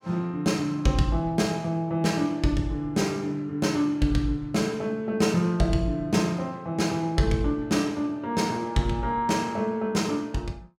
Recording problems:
none

